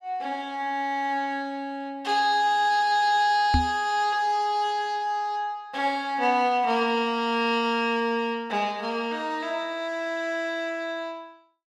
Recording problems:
microphone thump; at 3.5 s; peak +5 dB vs average level

